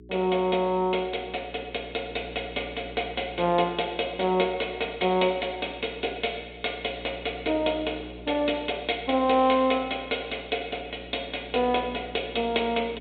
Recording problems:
treble cut off; nothing above 4 kHz
hum; 60 Hz, harmonics up to 420 Hz, SNR 18 dB

